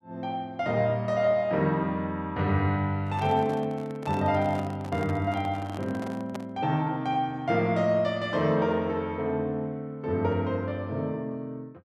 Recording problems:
handling noise; from 3 to 6.5 s; peak -5 dB vs average level

